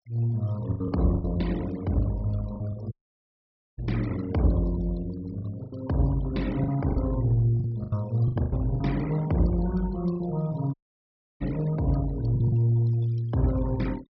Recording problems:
treble missing; nothing above 5.5 kHz
noise reduction artefacts; signal-to-artefact ratio 20 dB
lost packets; 8% of the sound replaced, filled with the last packet
audio cutting out; at 3 s for 1 s and at 11 s for 0.5 s

